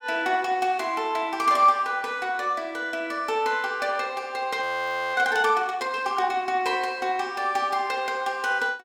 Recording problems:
audio freezing; at 4.5 s for 0.5 s

